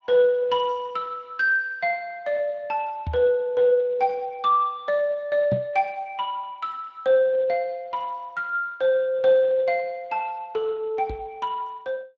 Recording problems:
lossy compression; Speex, log-spectral distance 2 dB
microphone bump; at 3 s, at 5.5 s and at 11 s; peak 0 dB vs average level

